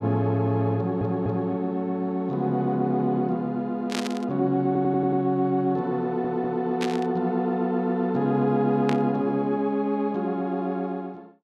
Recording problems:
stutter; at 1 s, at 4.5 s and at 6 s
static burst; at 4 s, at 7 s and at 9 s; peak -2 dB vs average level

